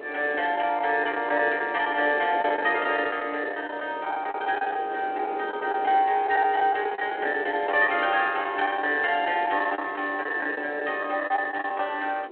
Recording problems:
phone line; 320 Hz to 3.3 kHz, G.726
wind on the microphone; below 670 Hz, SNR 15 dB
lost packets; 10% of the sound replaced, filled with the last packet

